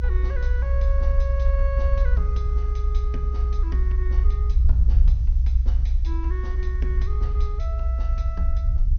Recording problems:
treble cut off; nothing above 6.5 kHz
hiss; slope +2 dB per octave, SNR 27 dB
rumble; below 62 Hz, SNR -14 dB

